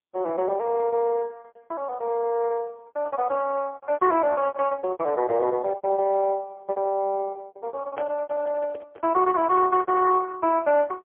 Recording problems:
phone line; 300 Hz to 2.6 kHz, AMR-NB, then MP3
lost packets; 14% of the sound replaced, filled with repeated pitch periods
microphone handling noise; from 8 to 9 s; peak -10 dB vs average level

